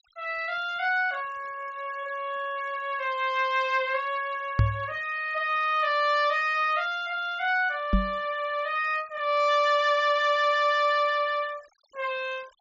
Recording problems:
treble cut off; nothing above 8 kHz
noise reduction artefacts; signal-to-artefact ratio 26 dB
microphone thump; at 4.5 s and at 8 s; peak +6 dB vs average level

